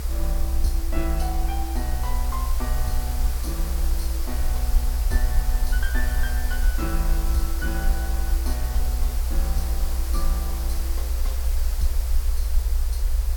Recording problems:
hiss; slope -3 dB per octave, SNR 2 dB
low-frequency rumble; below 60 Hz, SNR -8 dB

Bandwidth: 17.5 kHz